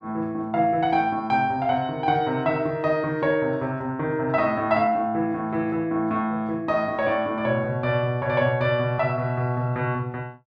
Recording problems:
none

